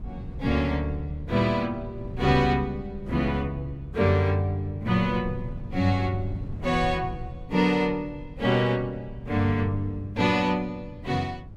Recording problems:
wind on the microphone; below 140 Hz, SNR 14 dB

